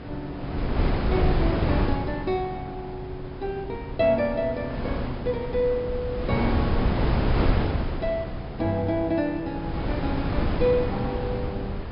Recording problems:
treble cut off; nothing above 5.5 kHz
wind noise; below 370 Hz, SNR 0 dB

